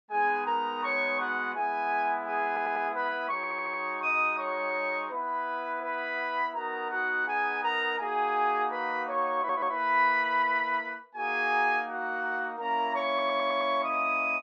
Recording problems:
stutter; 4 times, first at 2.5 s

